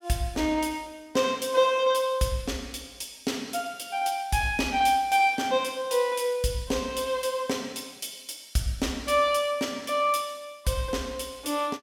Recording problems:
none

